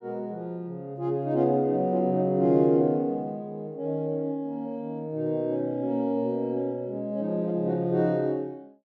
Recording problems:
none

